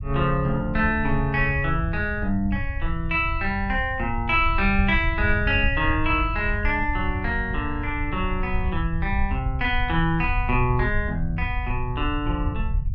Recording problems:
low-frequency rumble; below 82 Hz, SNR 5 dB

